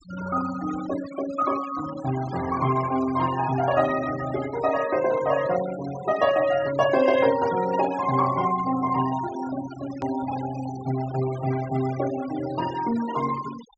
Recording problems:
treble cut off; nothing above 8 kHz
noise reduction artefacts; signal-to-artefact ratio 14 dB
edit click; at 10 s

